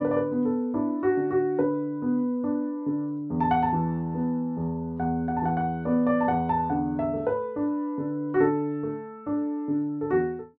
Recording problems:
none

